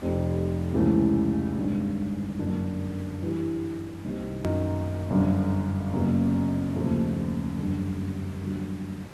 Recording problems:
background hiss; slope -5 dB per octave, SNR 18 dB
hard cut with a click; at 4.5 s

